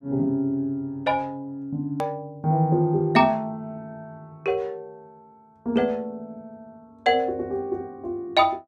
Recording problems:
hard cut with a click; at 2 s

